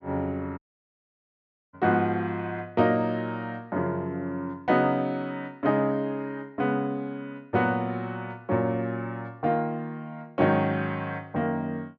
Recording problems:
treble cut off; nothing above 7 kHz
dropout; at 0.5 s for 1 s

